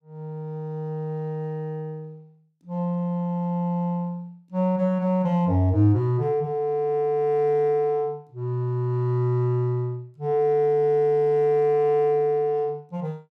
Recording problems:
none

